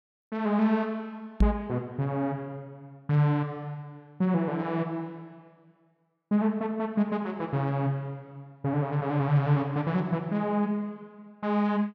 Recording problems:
knock on the microphone; at 1.5 s; peak +9 dB vs average level

